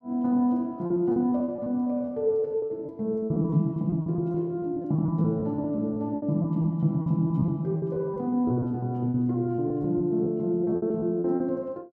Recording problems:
lost packets; 14% of the sound replaced, filled with repeated pitch periods

